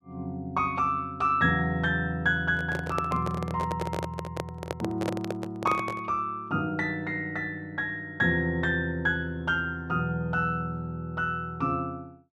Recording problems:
microphone handling noise; from 2.5 to 6 s; peak +1 dB vs average level

